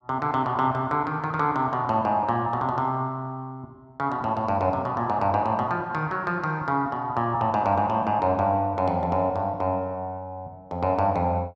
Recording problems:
none

